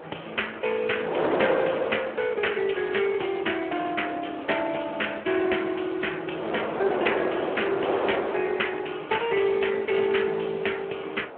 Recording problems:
phone line; 300 Hz to 3.2 kHz, Speex
wind on the microphone; below 910 Hz, SNR 6 dB

